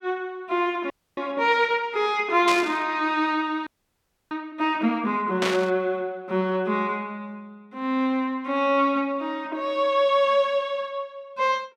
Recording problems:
frozen audio; at 1 s and at 3.5 s for 0.5 s
burst of static; at 2.5 s and at 5.5 s; peak +1 dB vs average level

